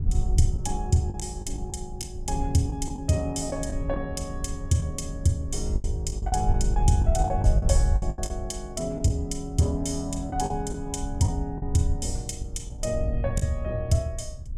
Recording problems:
wind on the microphone; below 78 Hz, SNR 3 dB
lost packets; 8% of the sound replaced, filled with the last packet

